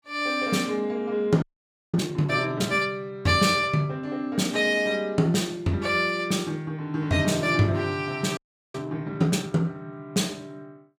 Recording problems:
frozen audio; at 1.5 s for 0.5 s and at 8.5 s

